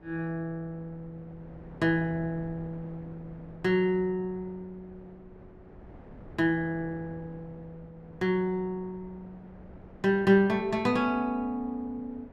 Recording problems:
wind noise; below 480 Hz, SNR 21 dB

